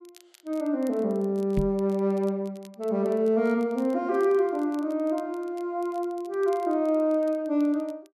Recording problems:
crackle; vinyl, SNR 30 dB
microphone thump; at 1.5 s; peak +2 dB vs average level

